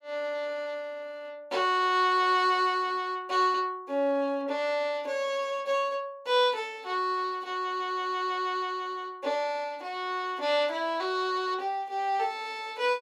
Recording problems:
none

